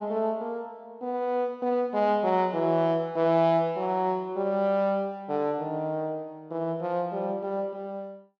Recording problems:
none

